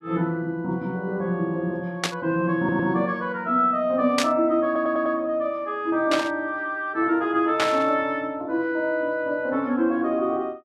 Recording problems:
burst of static; 4 times, first at 2 s; peak +4 dB vs average level
stutter; at 2.5 s and at 4.5 s

